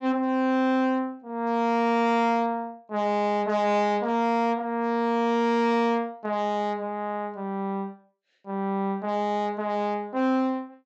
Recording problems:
treble missing; nothing above 8 kHz
distortion; hard clipping, signal-to-distortion ratio 12 dB

